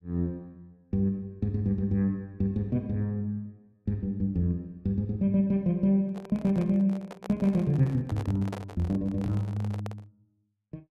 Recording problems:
microphone handling noise; from 6 to 10 s; peak -6 dB vs average level

